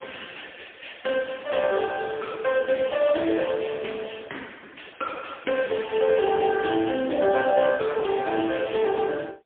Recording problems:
telephone audio; 240 Hz to 3.5 kHz, AMR-NB, then MP3

